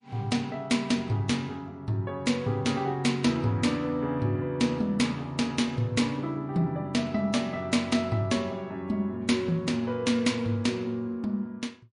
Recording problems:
lossy codec; MP3, log-spectral distance 2 dB, nothing above 10.1 kHz

